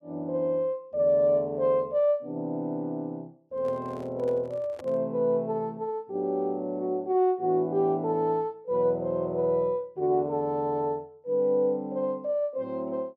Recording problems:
microphone handling noise; from 3.5 to 5 s; peak -11 dB vs average level

